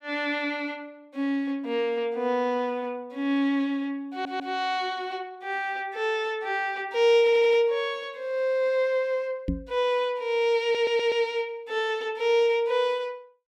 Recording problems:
audio stuttering; at 4 s, at 7 s and at 11 s
knock on the microphone; at 9.5 s; peak +2 dB vs average level

